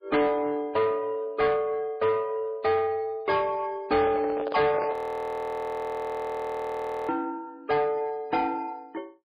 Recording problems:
codec artefacts; MP3, log-spectral distance 2 dB, nothing above 14.7 kHz
distortion; soft clipping, signal-to-distortion ratio 10 dB
handling noise; at 4 s; peak -2 dB vs average level
frozen audio; at 5 s for 2 s

